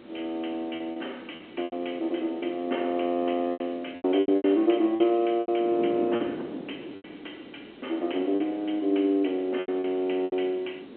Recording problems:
phone line; 260 Hz to 3.2 kHz, G.711
wind noise; below 450 Hz, SNR 14 dB
lost packets; 9% of the sound replaced, filled with repeated pitch periods

